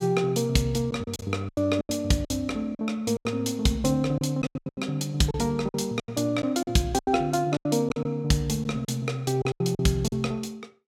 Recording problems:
packet loss; 13% of the sound replaced, filled with silence

